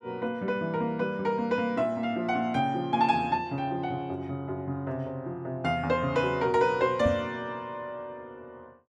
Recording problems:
knock on the microphone; at 7 s; peak +2 dB vs average level

